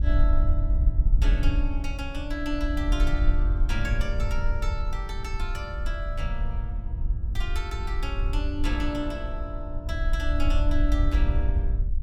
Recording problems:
wind on the microphone; below 58 Hz, SNR -6 dB

